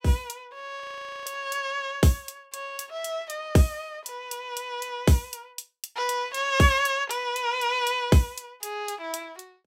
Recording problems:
frozen audio; at 1 s

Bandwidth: 16.5 kHz